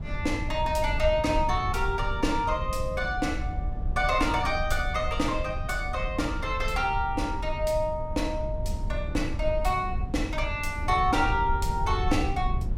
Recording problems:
rumble; below 86 Hz, SNR 5 dB

